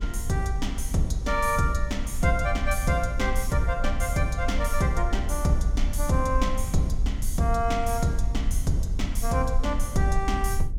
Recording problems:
rumble; below 54 Hz, SNR 4 dB

